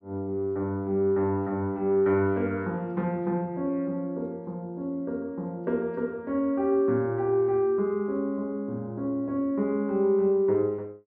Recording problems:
none

